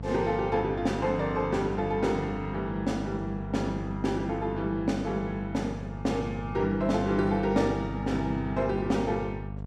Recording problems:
hum; 50 Hz, harmonics up to 900 Hz, SNR 8 dB

